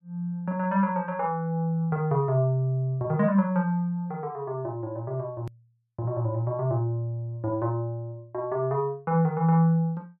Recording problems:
hard cut with a click; at 5.5 s

